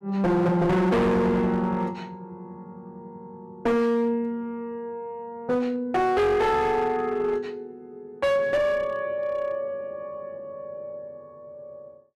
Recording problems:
distorted audio; hard clipping, uneven, signal-to-distortion ratio 6 dB

